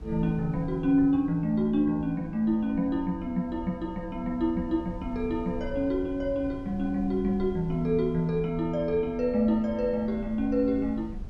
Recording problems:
wind on the microphone; below 110 Hz, SNR 16 dB

